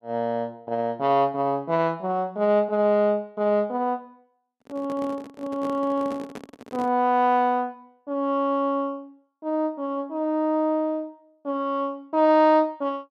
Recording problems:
handling noise; from 4.5 to 7 s; peak -8 dB vs average level

